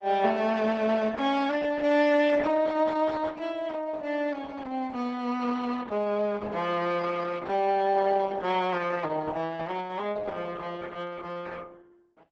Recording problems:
codec artefacts; Opus, log-spectral distance 3 dB, nothing above 7.8 kHz

